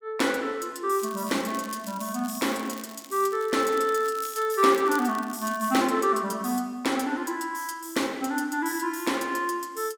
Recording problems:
crackling; from 1 to 6 s; loose cable, SNR 18 dB

